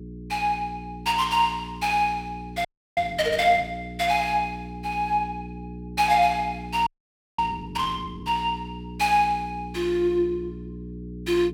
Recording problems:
mains hum; 60 Hz, harmonics up to 420 Hz, SNR 13 dB
audio freezing; at 2.5 s and at 7 s for 0.5 s

